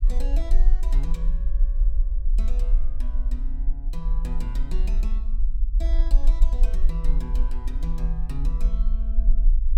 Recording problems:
low-frequency rumble; below 40 Hz, strongest tone 24 Hz, SNR -13 dB

